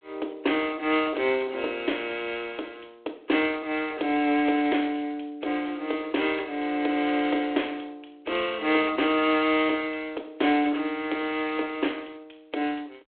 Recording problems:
phone line; 260 Hz to 3.4 kHz, G.726

